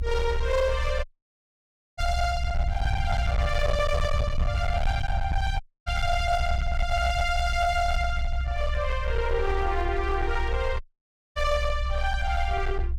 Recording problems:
distorted audio; hard clipping, uneven, signal-to-distortion ratio 11 dB
low-frequency rumble; below 70 Hz, SNR 2 dB
dropout; at 1 s for 1 s, at 5.5 s and at 11 s for 0.5 s

